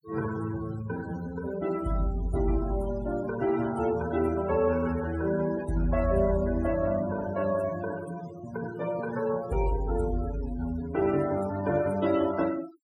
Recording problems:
denoising artefacts; signal-to-artefact ratio 15 dB

